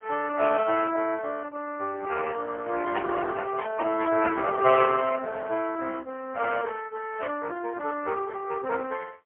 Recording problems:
telephone audio; 240 Hz to 2.6 kHz, AMR-NB, then MP3

